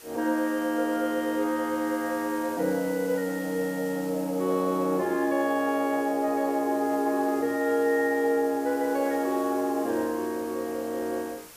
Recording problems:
background hiss; slope -1 dB per octave, SNR 18 dB

